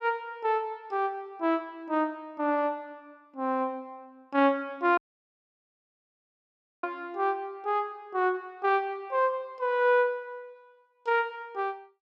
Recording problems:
dropout; at 5 s for 2 s

